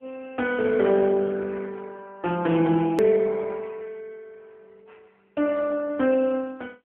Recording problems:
telephone audio; 190 Hz to 3 kHz, AMR-NB
click at an edit; at 3 s

